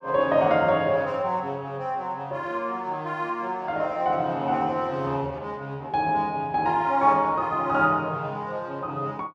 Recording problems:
none

